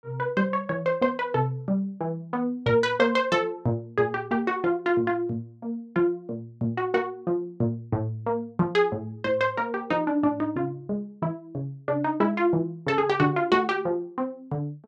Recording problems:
none

